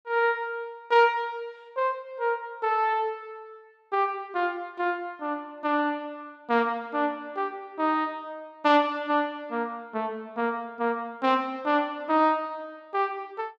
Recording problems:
none

